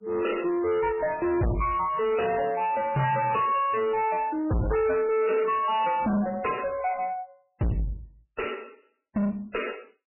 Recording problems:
lossy compression; MP3, log-spectral distance 4 dB, nothing above 2.9 kHz
distortion; soft clipping, signal-to-distortion ratio 5 dB

